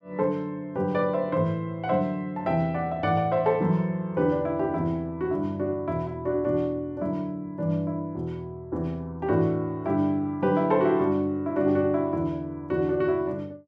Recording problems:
none

